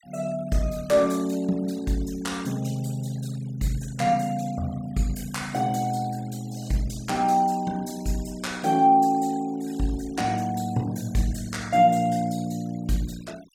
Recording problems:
denoising artefacts; signal-to-artefact ratio 22 dB

